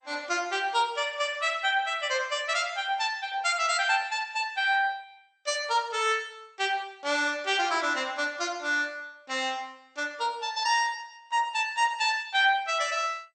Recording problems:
lossy compression; MP2, log-spectral distance 4 dB, nothing above 8.5 kHz

